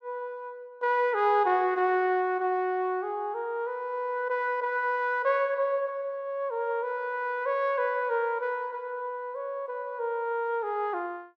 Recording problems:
none

